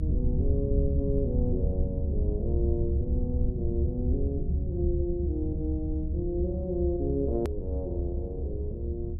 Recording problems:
rumble; below 100 Hz, SNR -3 dB
click at an edit; at 7.5 s

